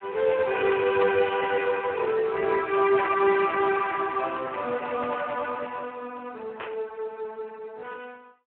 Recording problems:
phone line; 280 Hz to 2.9 kHz, Speex
static burst; at 1 s, at 3 s and at 6.5 s; peak -3 dB vs average level

